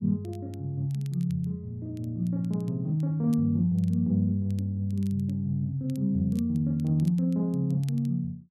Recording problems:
crackling; vinyl, SNR 30 dB

